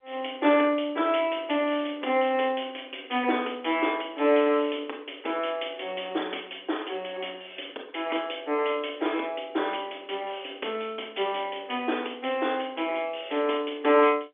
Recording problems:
phone line; 260 Hz to 3.5 kHz, G.711

